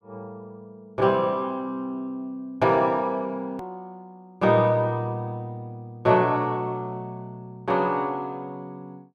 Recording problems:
click at an edit; at 3.5 s

